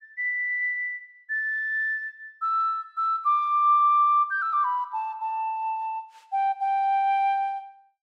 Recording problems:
none

